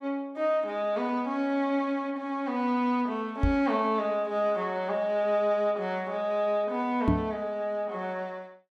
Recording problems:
microphone thump; at 3.5 s and at 7 s; peak +7 dB vs average level

